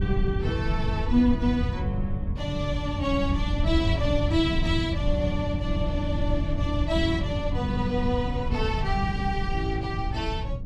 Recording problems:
rumble; below 110 Hz, SNR 2 dB

